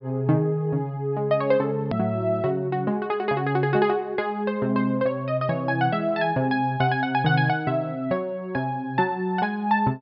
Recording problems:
treble missing; nothing above 5.5 kHz
hard cut with a click; at 2 s

